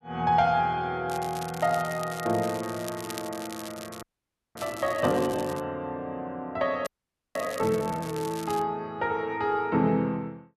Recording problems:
crackling; from 1 to 5.5 s and from 7 to 8.5 s; loose cable, SNR 15 dB
frozen audio; at 4 s for 0.5 s and at 7 s

